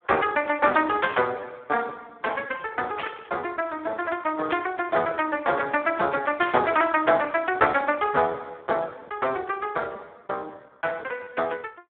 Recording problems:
phone line; 260 Hz to 3.6 kHz, Speex
burst of static; 4 times, first at 1 s; peak -2 dB vs average level

